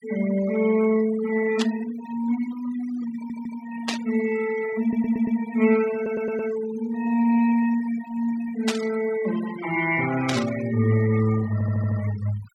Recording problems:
denoising artefacts; signal-to-artefact ratio 14 dB
burst of static; 4 times, first at 1.5 s; peak +2 dB vs average level
stutter; 4 times, first at 3 s

